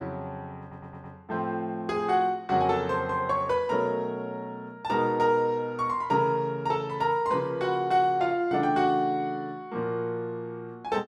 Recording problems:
audio stuttering; at 0.5 s

